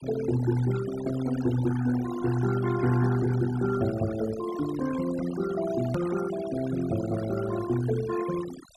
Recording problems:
noise reduction artefacts; signal-to-artefact ratio 12 dB
click at an edit; at 6 s

